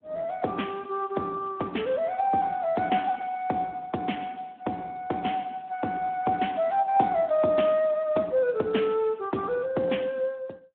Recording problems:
telephone audio; 170 Hz to 3.3 kHz, Speex

